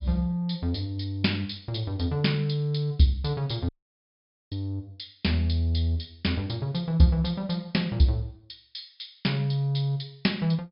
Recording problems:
treble cut off; nothing above 5.5 kHz
audio cutting out; at 3.5 s for 1 s

